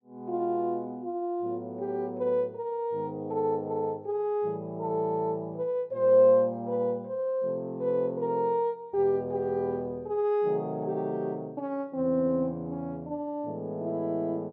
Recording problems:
none

